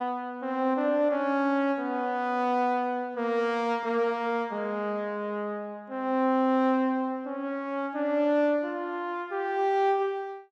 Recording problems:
none

